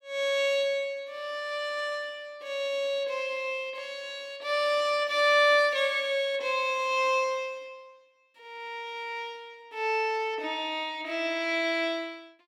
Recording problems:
none

